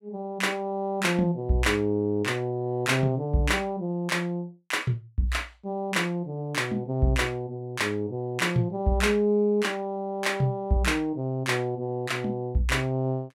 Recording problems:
none

